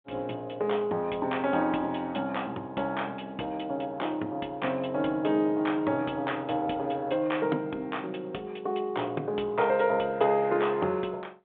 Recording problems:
telephone audio; 260 Hz to 3.6 kHz, G.726

